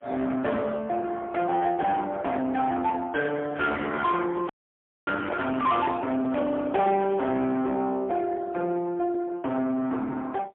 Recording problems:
telephone audio; 220 Hz to 3.6 kHz, AMR-NB, then MP3
distorted audio; soft clipping, signal-to-distortion ratio 10 dB
handling noise; from 3.5 to 6.5 s; peak -4 dB vs average level
frozen audio; at 4.5 s for 0.5 s

